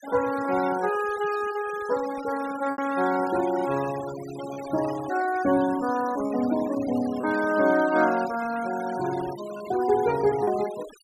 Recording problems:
noise reduction artefacts; signal-to-artefact ratio 15 dB
lost packets; 2% of the sound replaced, filled with repeated pitch periods

